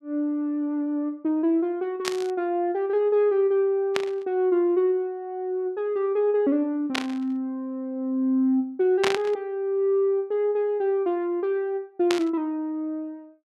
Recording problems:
burst of static; 5 times, first at 2 s; peak +3 dB vs average level

